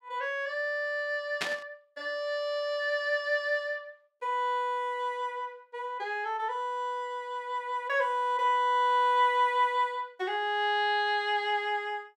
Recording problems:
burst of static; at 1.5 s; peak +3 dB vs average level

